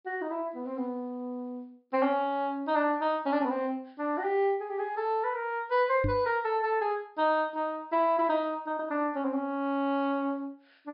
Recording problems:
treble missing; nothing above 5.5 kHz
microphone thump; at 6 s; peak +2 dB vs average level

